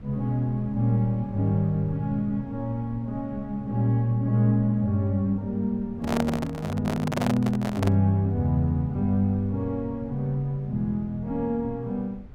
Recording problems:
rumble; below 110 Hz, SNR 20 dB
handling noise; from 6 to 8 s; peak +1 dB vs average level

